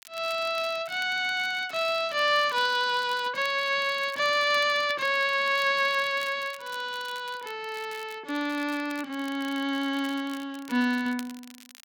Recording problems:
crackling; vinyl, SNR 22 dB

